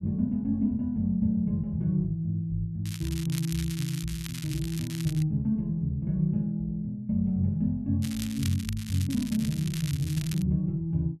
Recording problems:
crackle; from 3 to 5 s and from 8 to 10 s; loose cable, SNR 12 dB

